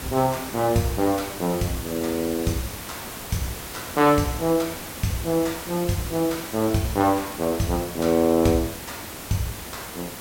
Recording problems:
background hiss; slope -3 dB per octave, SNR 10 dB

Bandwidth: 16.5 kHz